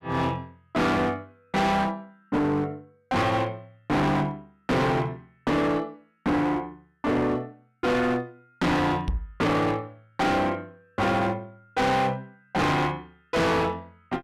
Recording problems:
distortion; hard clipping, uneven, signal-to-distortion ratio 5 dB
microphone thump; at 9 s; peak +2 dB vs average level

